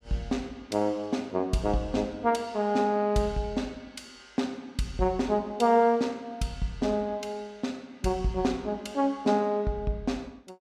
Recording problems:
none

